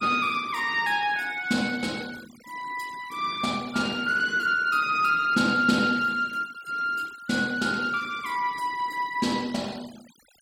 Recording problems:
noise reduction artefacts; signal-to-artefact ratio 21 dB

